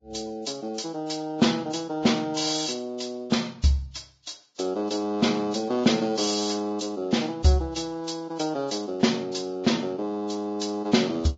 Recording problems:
codec artefacts; Vorbis, log-spectral distance 5 dB, nothing above 7.3 kHz

